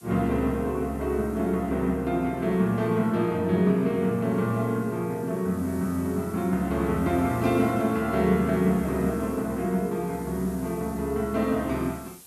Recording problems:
hiss; SNR 23 dB

